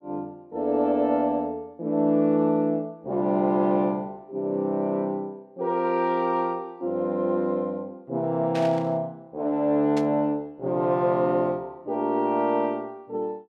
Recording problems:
static burst; at 8.5 s and at 10 s; peak -7 dB vs average level

